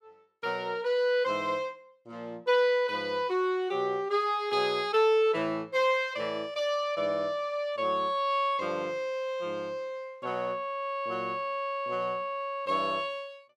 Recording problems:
none

